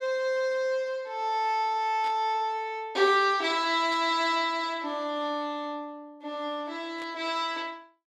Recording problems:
burst of static; at 2 s, at 4 s and at 7 s; peak -13 dB vs average level

